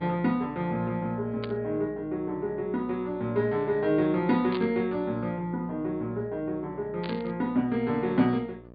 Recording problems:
low-pass filter; nothing above 4.7 kHz
hum; 60 Hz, harmonics up to 1.3 kHz, SNR 20 dB
static burst; at 1.5 s, at 4.5 s and at 7 s; peak -6 dB vs average level

